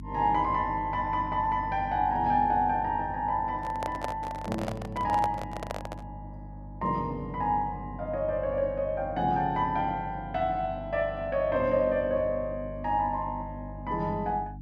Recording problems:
electrical hum; 50 Hz, harmonics up to 300 Hz, SNR 14 dB
microphone handling noise; from 3.5 to 6 s; peak -1 dB vs average level

